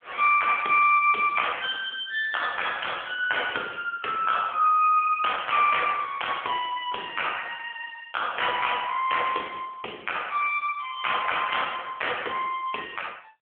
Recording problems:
phone line; 280 Hz to 3.4 kHz, AMR-NB

